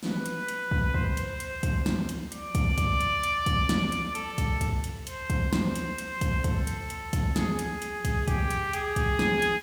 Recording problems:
background hiss; slope -1 dB per octave, SNR 23 dB

